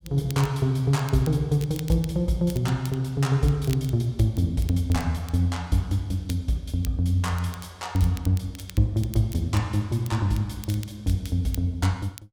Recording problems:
crackling; vinyl, SNR 20 dB

